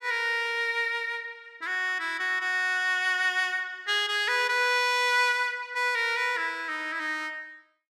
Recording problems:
none

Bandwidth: 14.5 kHz